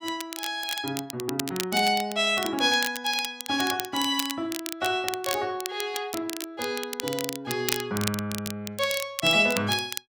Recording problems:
crackle; vinyl, SNR 7 dB

